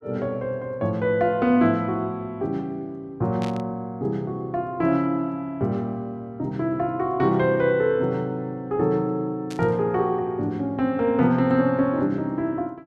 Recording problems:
burst of static; at 3.5 s and at 9.5 s; peak -10 dB vs average level

